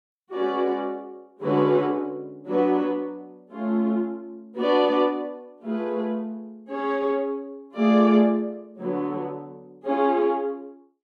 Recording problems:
none

